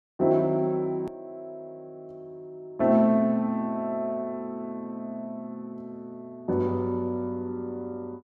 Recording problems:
hard cut with a click; at 1 s

